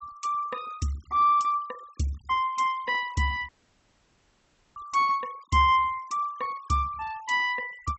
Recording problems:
treble cut off; nothing above 7.9 kHz
noise reduction artefacts; signal-to-artefact ratio 25 dB
audio cutting out; at 3.5 s for 1.5 s

